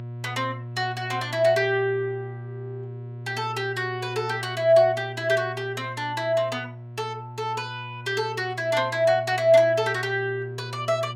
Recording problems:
hum; 60 Hz, harmonics up to 960 Hz, SNR 13 dB

